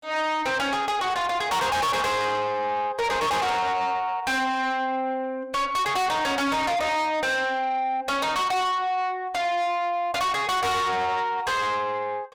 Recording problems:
distortion; soft clipping, signal-to-distortion ratio 6 dB

